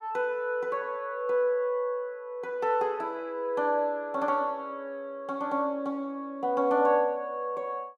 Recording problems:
none

